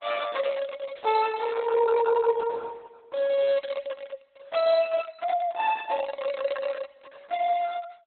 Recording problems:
codec artefacts; Opus, log-spectral distance 4 dB, nothing above 4 kHz

